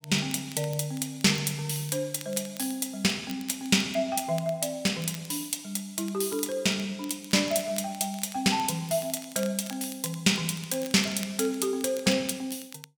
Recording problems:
crackling; vinyl, SNR 19 dB

